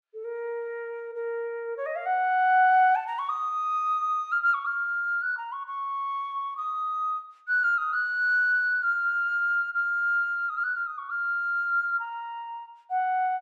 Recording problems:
none

